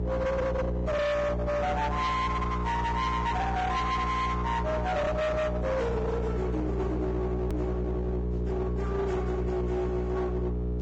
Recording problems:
low-pass filter; nothing above 8 kHz
codec artefacts; Vorbis, log-spectral distance 2 dB
distorted audio; hard clipping, signal-to-distortion ratio 8 dB
electrical hum; 60 Hz, harmonics up to 600 Hz, SNR 2 dB
edit click; at 7.5 s

